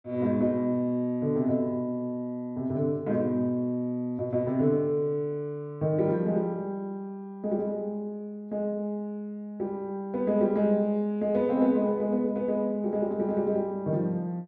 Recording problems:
none

